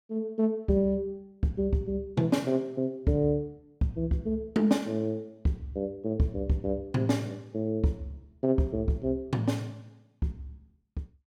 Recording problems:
none

